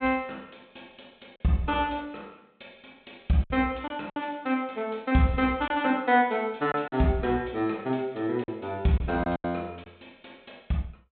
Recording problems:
treble cut off; nothing above 4 kHz
lost packets; 4% of the sound replaced, filled with silence

